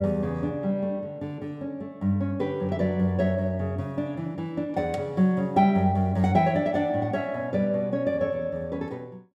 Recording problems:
none

